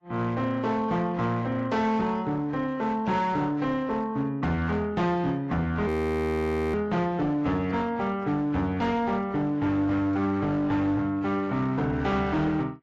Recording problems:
codec artefacts; AAC, log-spectral distance 2 dB, nothing above 13.1 kHz
distorted audio; hard clipping, uneven, signal-to-distortion ratio 12 dB
frozen audio; at 6 s for 1 s

